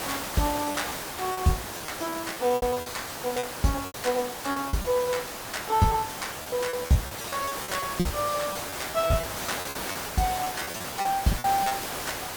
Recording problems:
hiss; slope -3 dB per octave, SNR 5 dB
lost packets; 14% of the sound replaced, filled with repeated pitch periods
crackling; from 2 to 4 s; loose cable, SNR 25 dB

